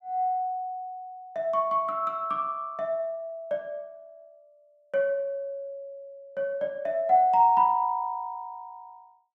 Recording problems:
none

